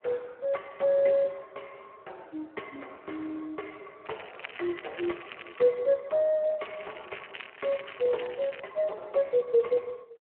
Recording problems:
telephone audio; 320 Hz to 3.2 kHz, Speex
crackling; from 4 to 5.5 s and from 6.5 to 8.5 s; loose cable, SNR 15 dB

